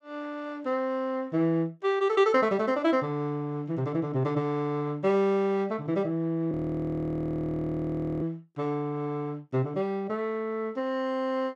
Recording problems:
audio freezing; at 6.5 s for 1.5 s

